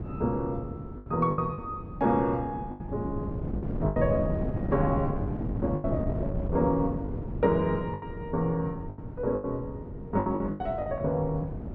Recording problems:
wind on the microphone; below 270 Hz, SNR 5 dB
lost packets; 9% of the sound replaced, filled with the last packet

